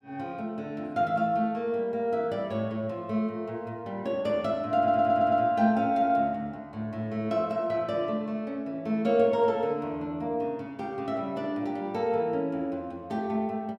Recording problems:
stutter; at 5 s

